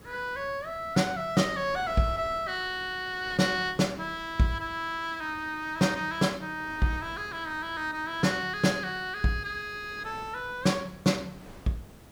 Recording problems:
hiss; slope -6 dB per octave, SNR 22 dB
wind noise; below 1.1 kHz, SNR 23 dB

